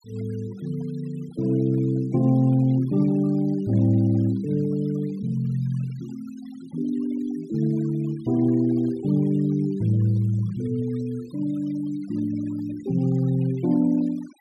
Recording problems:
noise reduction artefacts; signal-to-artefact ratio 25 dB

